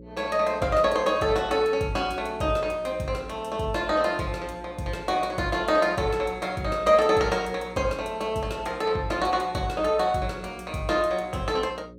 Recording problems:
hum; 60 Hz, harmonics up to 540 Hz, SNR 20 dB

